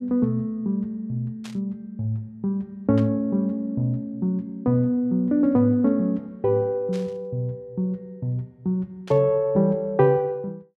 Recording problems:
static burst; 4 times, first at 1.5 s; peak -13 dB vs average level

